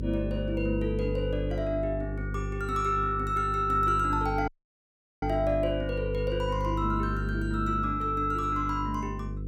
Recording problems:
mains hum; 50 Hz, harmonics up to 500 Hz, SNR 5 dB
dropout; at 4.5 s for 0.5 s

